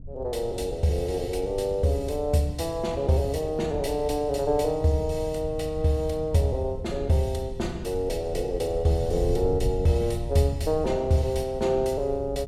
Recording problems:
wind noise; below 100 Hz, SNR 10 dB

